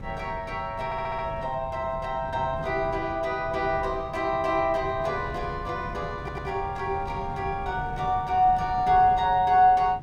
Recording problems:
wind noise; below 190 Hz, SNR 13 dB
audio stuttering; at 1 s and at 6 s

